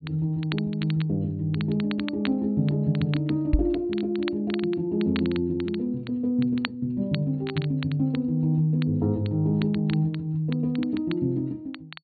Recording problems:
treble missing; nothing above 4.4 kHz
crackle; vinyl, SNR 16 dB
microphone bump; at 3.5 s; peak +7 dB vs average level

